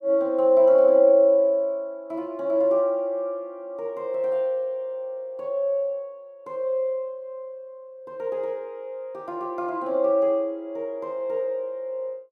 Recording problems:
none

